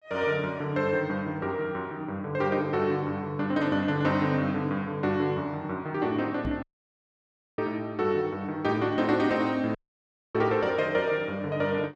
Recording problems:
knock on the microphone; at 6.5 s; peak -3 dB vs average level
audio cutting out; at 6.5 s for 1 s and at 10 s for 0.5 s

